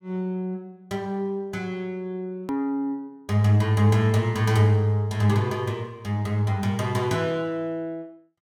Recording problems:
click at an edit; at 2.5 s

